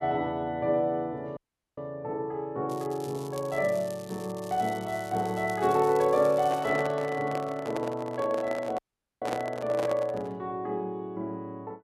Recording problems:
dropout; at 1.5 s and at 9 s
crackling; from 2.5 to 6.5 s; loose cable, SNR 19 dB
handling noise; from 6.5 to 10 s; peak +1 dB vs average level

